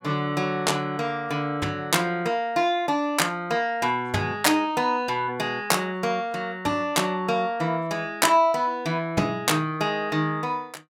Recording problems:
none

